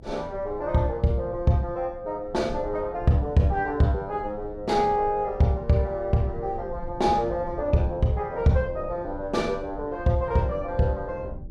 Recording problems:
rumble; below 120 Hz, SNR 16 dB

